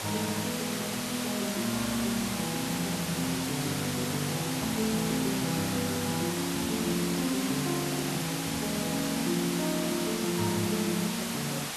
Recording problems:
hiss; slope -1 dB per octave, SNR 2 dB

